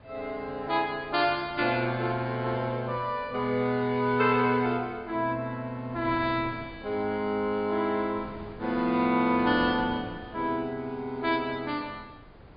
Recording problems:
treble cut off; nothing above 4.9 kHz
wind noise; below 680 Hz, SNR 20 dB

